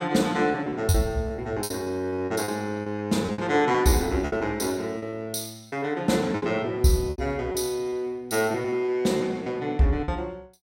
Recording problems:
lost packets; 10% of the sound replaced, filled with repeated pitch periods

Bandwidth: 16 kHz